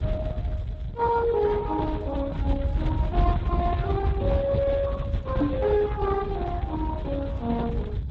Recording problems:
lossy compression; Speex, log-spectral distance 2 dB
low-frequency rumble; below 120 Hz, SNR 2 dB
microphone bump; at 5.5 s; peak +5 dB vs average level

